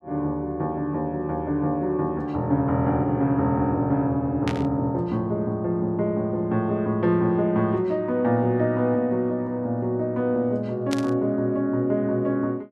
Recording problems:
static burst; at 4.5 s and at 11 s; peak -3 dB vs average level

